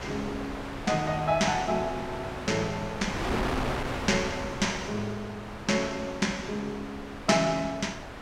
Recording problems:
wind noise; below 1.6 kHz, SNR 6 dB

